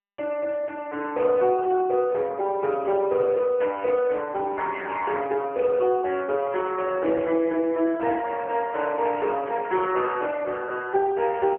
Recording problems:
telephone audio; 300 Hz to 3.3 kHz, AMR-NB

